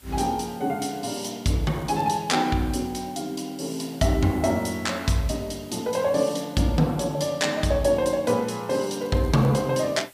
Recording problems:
hiss; SNR 25 dB
crackling; at 1.5 s and at 8.5 s; loose cable, SNR 29 dB

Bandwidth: 15 kHz